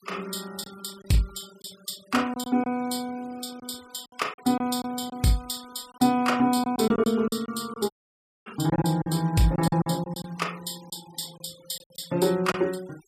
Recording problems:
noise reduction artefacts; signal-to-artefact ratio 22 dB
packet loss; 7% of the sound replaced, filled with silence
audio cutting out; at 8 s for 0.5 s

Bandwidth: 15 kHz